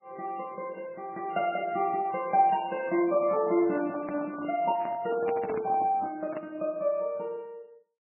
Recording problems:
codec artefacts; MP3, log-spectral distance 2 dB, nothing above 2.8 kHz
microphone handling noise; from 3 to 6.5 s; peak -4 dB vs average level

